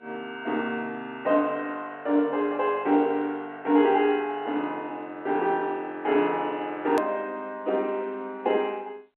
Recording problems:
phone line; 190 Hz to 3.3 kHz, G.711
click at an edit; at 7 s

